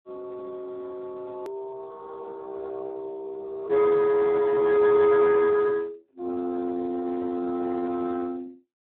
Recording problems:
phone line; 280 Hz to 2.1 kHz, Speex
edit click; at 1.5 s

